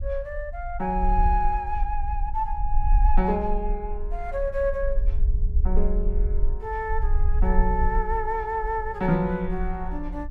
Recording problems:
low-frequency rumble; below 46 Hz, strongest tone 20 Hz, SNR 1 dB

